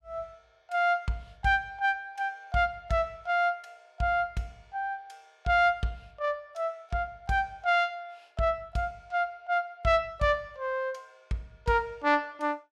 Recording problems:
none

